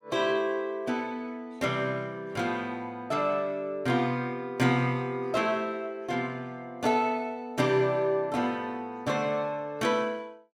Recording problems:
none

